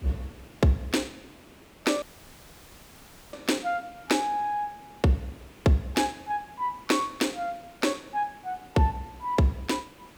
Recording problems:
hiss; SNR 23 dB
dropout; at 2 s for 1.5 s

